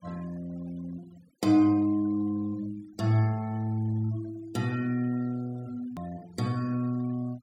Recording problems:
denoising artefacts; signal-to-artefact ratio 23 dB
edit click; at 6 s

